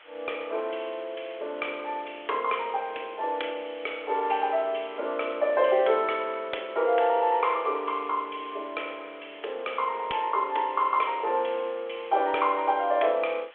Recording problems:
telephone audio; 340 Hz to 3.4 kHz, G.726
hiss; SNR 23 dB

